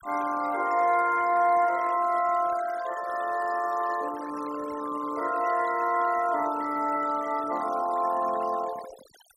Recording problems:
denoising artefacts; signal-to-artefact ratio 16 dB

